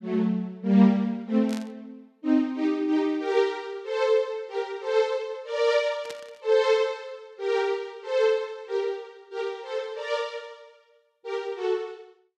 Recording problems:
burst of static; at 1.5 s and at 6 s; peak -9 dB vs average level

